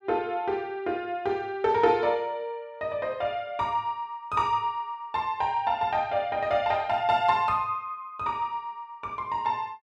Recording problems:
none

